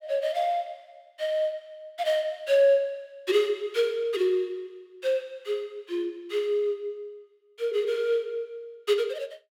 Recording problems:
none

